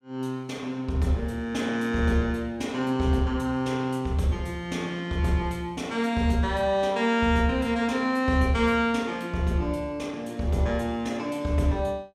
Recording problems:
none

